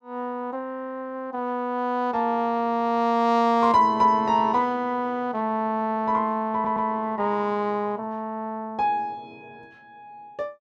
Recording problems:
stutter; at 6.5 s

